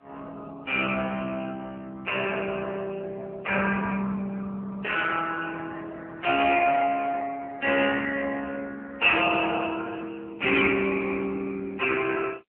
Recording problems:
telephone audio; 300 Hz to 3.1 kHz, AMR-NB

